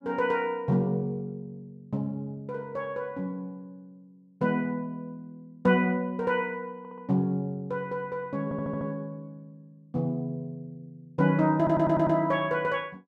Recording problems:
audio stuttering; at 7 s, at 8.5 s and at 12 s

